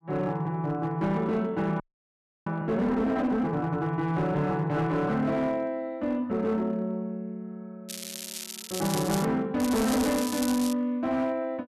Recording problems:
distorted audio; hard clipping, signal-to-distortion ratio 12 dB
audio freezing; at 2 s for 0.5 s
crackle; from 8 to 9.5 s and from 9.5 to 11 s; loose cable, SNR 8 dB

